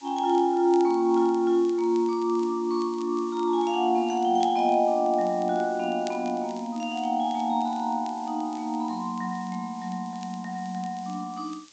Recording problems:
treble missing; nothing above 8 kHz
hiss; slope +2 dB per octave, SNR 26 dB
crackling; vinyl, SNR 27 dB

